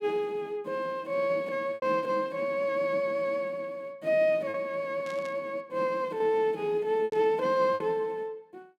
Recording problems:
lost packets; 3% of the sound replaced, filled with repeated pitch periods
static burst; at 5 s and at 7 s; peak -14 dB vs average level

